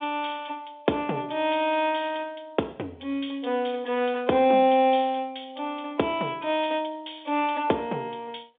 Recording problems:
telephone audio; 220 Hz to 3.6 kHz, G.711

